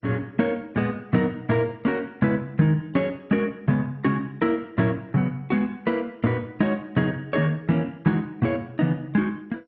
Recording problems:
codec artefacts; MP2, log-spectral distance 2 dB, nothing above 4.5 kHz

